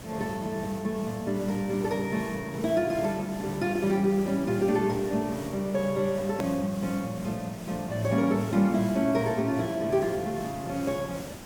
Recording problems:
background hiss; slope -5 dB per octave, SNR 14 dB
hard cut with a click; at 6.5 s

